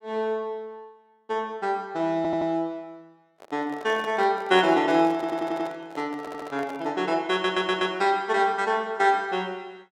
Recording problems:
stutter; 4 times, first at 2 s
microphone handling noise; from 3.5 to 7 s; peak -8 dB vs average level

